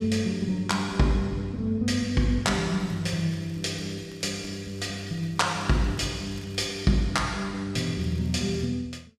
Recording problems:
crackling; from 3 to 7 s and at 8 s; loose cable, SNR 27 dB

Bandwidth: 14.5 kHz